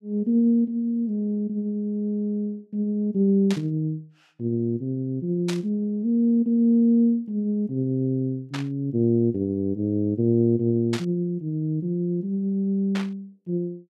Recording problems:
burst of static; 5 times, first at 3.5 s; peak -4 dB vs average level

